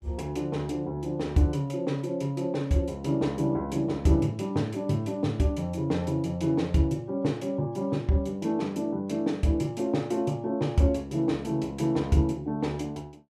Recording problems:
none

